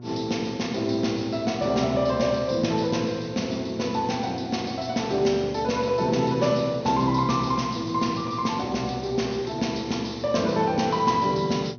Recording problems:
low-pass filter; nothing above 6.4 kHz
hum; 60 Hz, harmonics up to 720 Hz, SNR 17 dB

